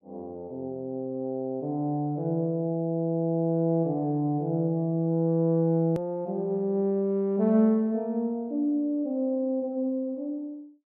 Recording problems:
hard cut with a click; at 6 s

